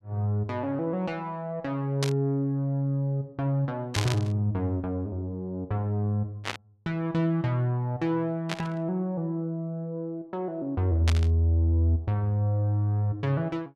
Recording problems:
static burst; 5 times, first at 2 s; peak +2 dB vs average level

